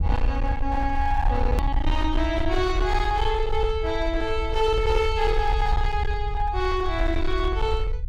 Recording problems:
distorted audio; hard clipping, signal-to-distortion ratio 12 dB
low-frequency rumble; below 64 Hz, SNR 3 dB
hard cut with a click; at 1.5 s

